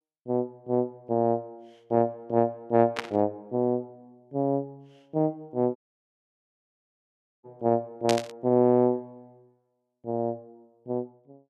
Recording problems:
burst of static; at 3 s and at 8 s; peak +2 dB vs average level
audio cutting out; at 6 s for 1.5 s

